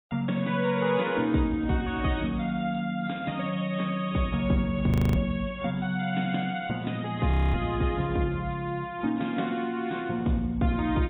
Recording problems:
codec artefacts; AAC, log-spectral distance 3 dB
frozen audio; at 5 s and at 7.5 s

